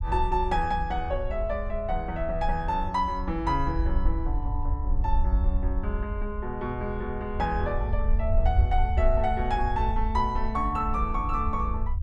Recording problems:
rumble; below 66 Hz, SNR 1 dB

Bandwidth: 12 kHz